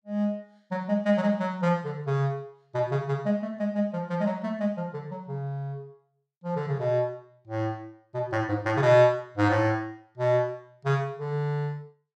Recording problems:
none

